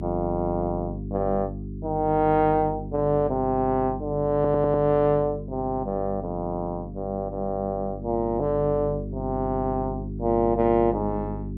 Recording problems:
hum; 50 Hz, harmonics up to 400 Hz, SNR 9 dB
stutter; at 4.5 s

